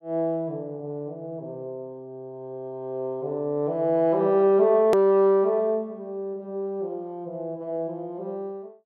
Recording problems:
click at an edit; at 5 s

